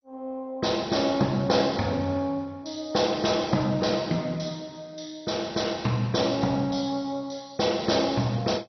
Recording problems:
lossy compression; MP2, log-spectral distance 4 dB, nothing above 6 kHz

